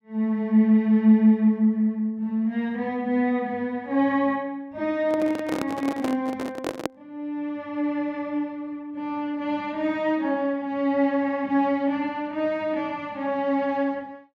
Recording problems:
microphone handling noise; from 5 to 7 s; peak +1 dB vs average level

